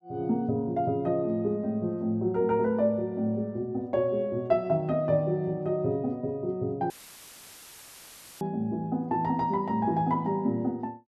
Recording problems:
audio cutting out; at 7 s for 1.5 s; filled with static

